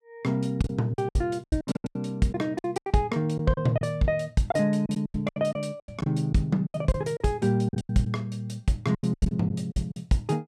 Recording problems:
lost packets; 15% of the sound replaced, filled with silence

